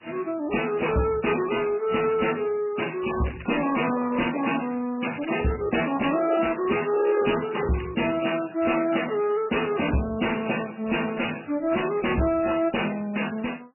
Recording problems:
lossy codec; AAC, then MP3, log-spectral distance 8 dB, nothing above 2.9 kHz
distortion; soft clipping, signal-to-distortion ratio 10 dB
crackle; from 3 to 4.5 s and from 5 to 8 s; loose cable, SNR 19 dB

